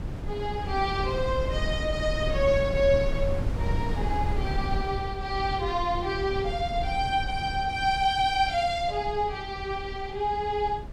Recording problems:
wind noise; below 140 Hz, SNR 6 dB

